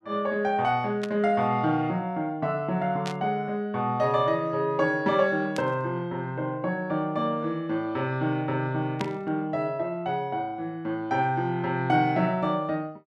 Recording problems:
burst of static; 4 times, first at 1 s; peak -4 dB vs average level

